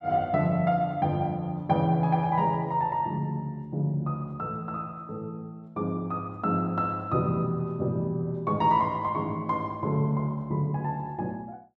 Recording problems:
none

